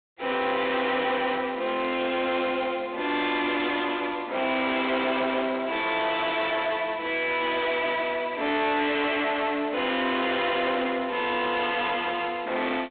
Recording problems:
telephone audio; 240 Hz to 3.9 kHz, G.726
distortion; soft clipping, signal-to-distortion ratio 5 dB

